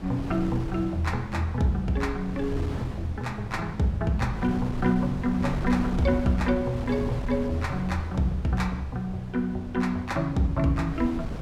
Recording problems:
wind noise; below 260 Hz, SNR 9 dB

